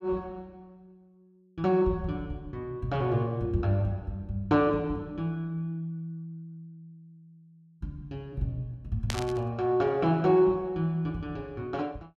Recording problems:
static burst; at 9 s; peak 0 dB vs average level

